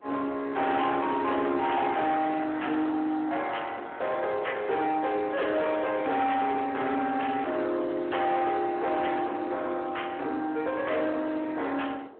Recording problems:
telephone audio; 240 Hz to 3.3 kHz, Speex
distorted audio; soft clipping, signal-to-distortion ratio 8 dB
wind noise; below 1 kHz, SNR 17 dB

